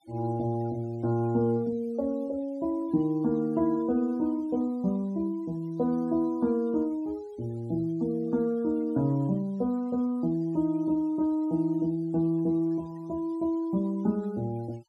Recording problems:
denoising artefacts; signal-to-artefact ratio 28 dB

